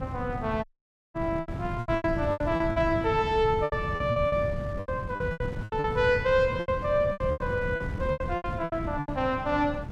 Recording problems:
electrical hum; 60 Hz, harmonics up to 1.6 kHz, SNR 24 dB
wind on the microphone; below 180 Hz, SNR 7 dB
lost packets; 16% of the sound replaced, filled with repeated pitch periods
audio cutting out; at 0.5 s

